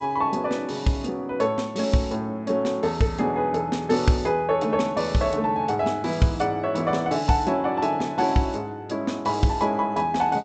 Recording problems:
codec artefacts; G.722, log-spectral distance 3 dB, nothing above 7.8 kHz

